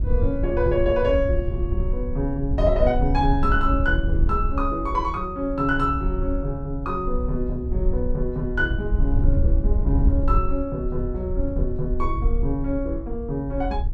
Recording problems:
wind noise; below 66 Hz, SNR 1 dB

